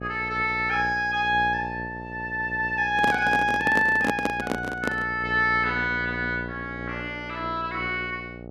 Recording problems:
hum; 60 Hz, harmonics up to 900 Hz, SNR 13 dB
handling noise; from 3 to 5 s; peak +3 dB vs average level

